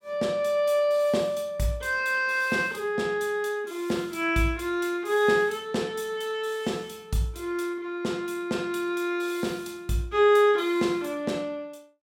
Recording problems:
none

